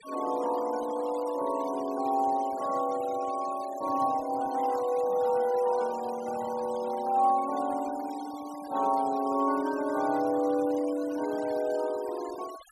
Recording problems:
denoising artefacts; signal-to-artefact ratio 19 dB

